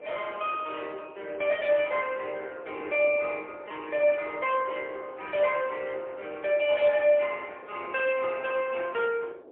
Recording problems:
telephone audio; 370 Hz to 3.5 kHz, AMR-NB, then MP3
wind on the microphone; below 570 Hz, SNR 20 dB

